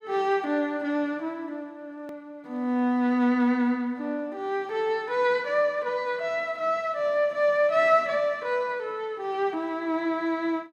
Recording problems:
edit click; at 2 s

